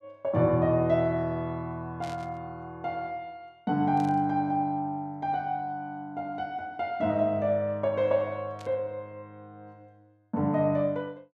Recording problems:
static burst; at 2 s, at 4 s and at 8.5 s; peak -13 dB vs average level

